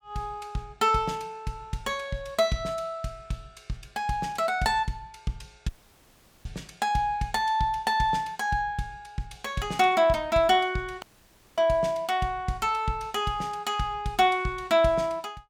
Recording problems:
audio cutting out; at 5.5 s for 1 s and at 11 s for 0.5 s

